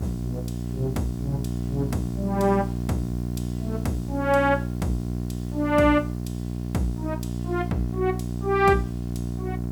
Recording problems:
electrical hum; 60 Hz, harmonics up to 780 Hz, SNR 4 dB
background hiss; SNR 27 dB

